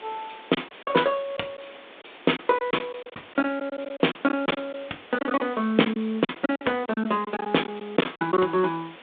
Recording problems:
phone line; 240 Hz to 3.7 kHz, G.726
background hiss; SNR 19 dB
lost packets; 11% of the sound replaced, filled with silence

